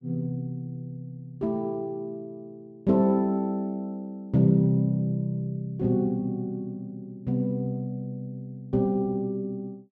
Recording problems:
none

